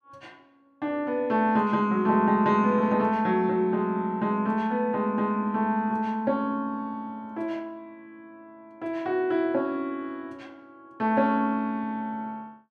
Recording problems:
none

